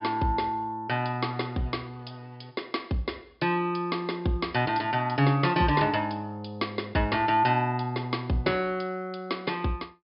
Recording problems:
low-pass filter; nothing above 5.5 kHz

